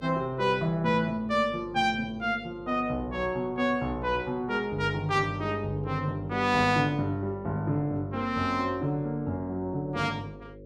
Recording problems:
hum; 50 Hz, harmonics up to 550 Hz, SNR 19 dB

